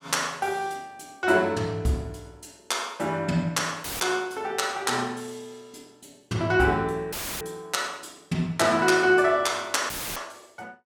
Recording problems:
dropout; at 4 s, at 7 s and at 10 s; filled with static

